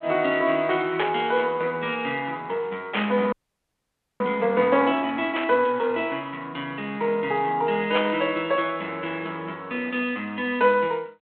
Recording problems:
telephone audio; 260 Hz to 3.4 kHz, G.726
burst of static; 4 times, first at 1 s; peak +2 dB vs average level
frozen audio; at 3.5 s for 1 s

